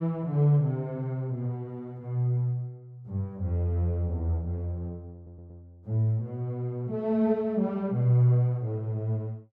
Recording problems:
audio stuttering; at 5 s

